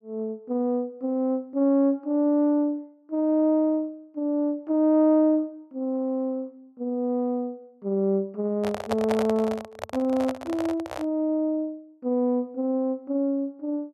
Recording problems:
microphone handling noise; from 8.5 to 11 s; peak +2 dB vs average level

